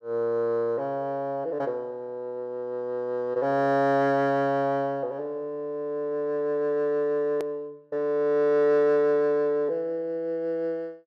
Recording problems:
hard cut with a click; at 7.5 s

